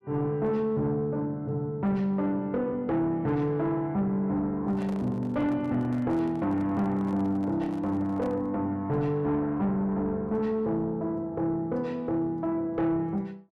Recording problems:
distorted audio; soft clipping, signal-to-distortion ratio 11 dB
handling noise; from 4.5 to 8.5 s; peak -10 dB vs average level

